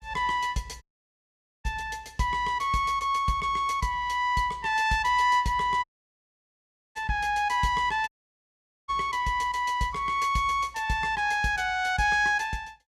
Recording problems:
audio cutting out; at 1 s for 1 s, at 6 s for 1 s and at 8 s for 1 s

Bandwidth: 14 kHz